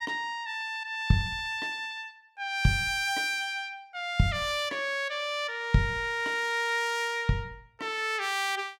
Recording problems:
none

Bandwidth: 17 kHz